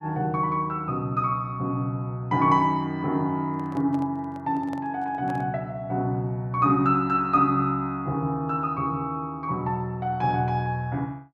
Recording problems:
microphone handling noise; from 3.5 to 5.5 s; peak -11 dB vs average level

